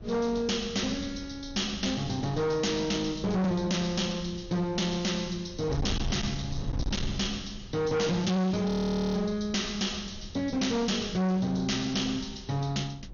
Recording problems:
codec artefacts; MP2, log-spectral distance 5 dB, nothing above 6.7 kHz
distortion; hard clipping, uneven, signal-to-distortion ratio 6 dB
wind on the microphone; below 140 Hz, SNR 13 dB
audio freezing; at 8.5 s

